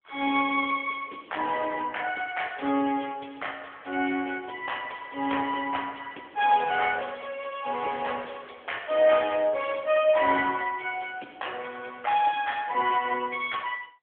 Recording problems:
telephone audio; 240 Hz to 3.4 kHz, AMR-NB

